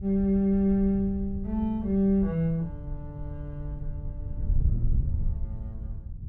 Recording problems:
wind noise; below 84 Hz, SNR 8 dB

